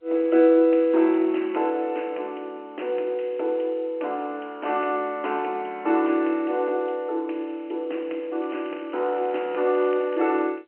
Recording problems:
telephone audio; 260 Hz to 3.2 kHz, G.711
crackling; from 8.5 to 10 s; loose cable, SNR 25 dB

